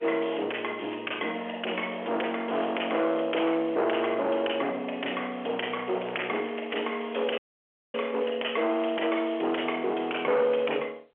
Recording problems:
telephone audio; 340 Hz to 3.1 kHz, G.711
distortion; hard clipping, signal-to-distortion ratio 9 dB
crackling; from 6 to 8.5 s; loose cable, SNR 20 dB
dropout; at 7.5 s for 0.5 s

